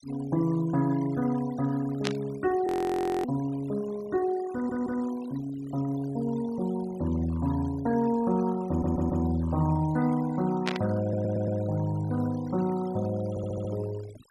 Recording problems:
denoising artefacts; signal-to-artefact ratio 19 dB
static burst; at 2 s and at 11 s; peak +2 dB vs average level
frozen audio; at 2.5 s for 0.5 s
stutter; 4 times, first at 4.5 s

